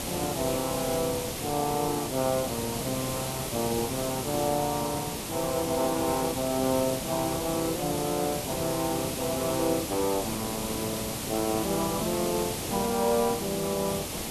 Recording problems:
hiss; SNR 3 dB

